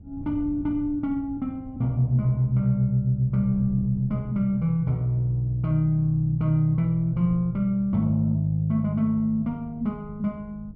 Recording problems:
wind on the microphone; below 160 Hz, SNR 20 dB

